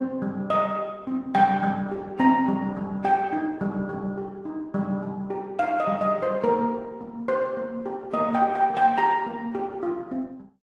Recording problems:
codec artefacts; AAC, then Opus, log-spectral distance 2 dB

